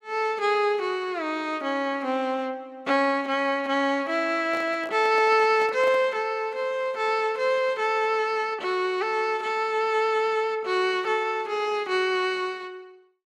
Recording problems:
microphone handling noise; from 4.5 to 6 s; peak -10 dB vs average level

